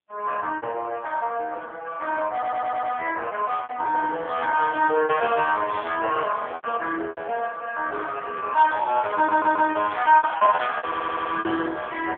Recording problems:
telephone audio; 340 Hz to 3.2 kHz, AMR-NB
lost packets; 8% of the sound replaced, filled with repeated pitch periods
audio stuttering; at 2.5 s, at 9 s and at 11 s

